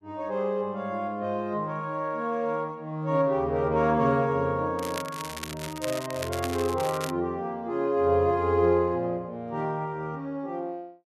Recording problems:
crackle; from 5 to 7 s; loose cable, SNR 11 dB

